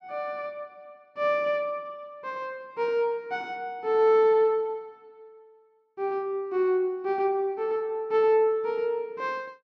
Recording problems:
none

